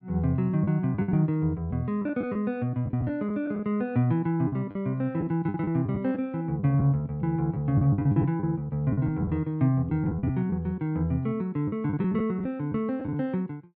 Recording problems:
lost packets; 9% of the sound replaced, filled with the last packet

